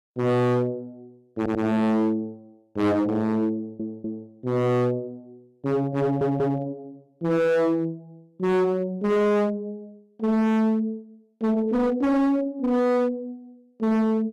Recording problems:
distorted audio; hard clipping, signal-to-distortion ratio 7 dB
stutter; at 1.5 s, at 3.5 s and at 6 s

